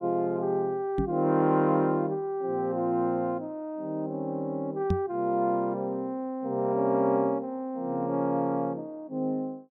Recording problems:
microphone thump; at 1 s and at 5 s; peak +4 dB vs average level

